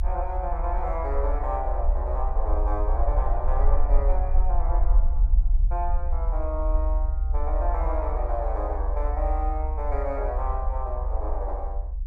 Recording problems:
low-frequency rumble; below 60 Hz, SNR -5 dB

